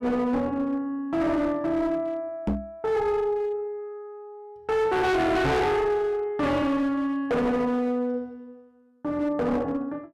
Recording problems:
distorted audio; hard clipping, uneven, signal-to-distortion ratio 6 dB
microphone bump; at 2.5 s and at 5.5 s; peak +6 dB vs average level

